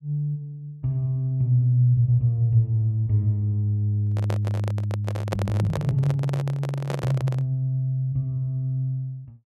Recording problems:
microphone handling noise; from 4 to 7.5 s; peak 0 dB vs average level

